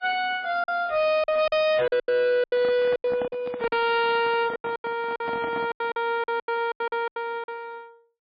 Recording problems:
codec artefacts; MP3, log-spectral distance 2 dB, nothing above 5 kHz
distortion; hard clipping, signal-to-distortion ratio 7 dB
lost packets; 15% of the sound replaced, filled with silence
handling noise; from 2.5 to 6 s; peak -6 dB vs average level

